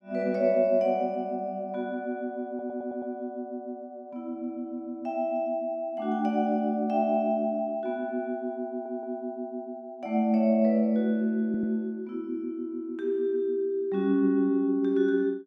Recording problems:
stutter; at 2.5 s, at 8.5 s and at 11 s

